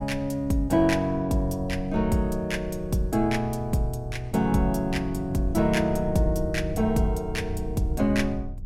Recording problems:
rumble; below 92 Hz, SNR 11 dB

